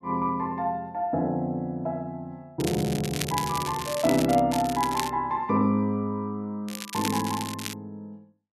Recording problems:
crackle; from 2.5 to 4.5 s, at 4.5 s and from 6.5 to 7.5 s; loose cable, SNR 8 dB

